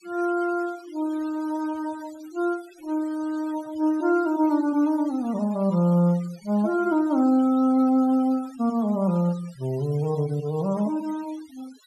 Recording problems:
denoising artefacts; signal-to-artefact ratio 24 dB

